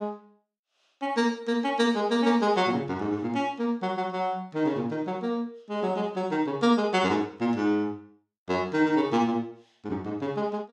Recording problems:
none

